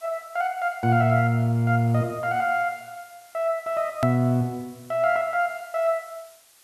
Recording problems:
hiss; slope +1 dB per octave, SNR 27 dB
edit click; at 4 s

